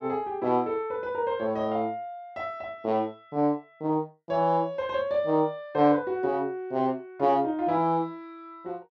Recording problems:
none

